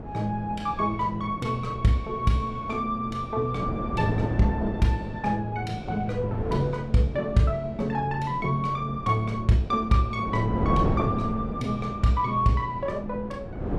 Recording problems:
wind noise; below 390 Hz, SNR 7 dB

